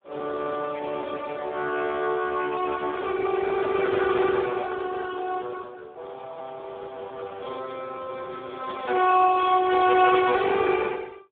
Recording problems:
phone line; 300 Hz to 2.2 kHz, Speex

